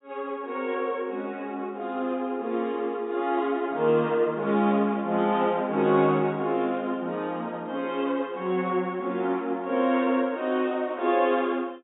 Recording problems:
treble missing; nothing above 4 kHz

